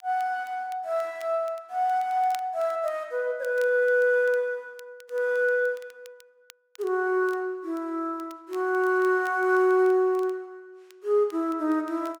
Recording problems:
crackle; vinyl, SNR 29 dB

